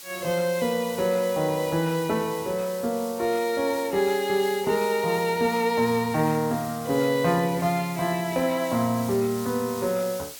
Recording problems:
background hiss; slope +2 dB per octave, SNR 15 dB

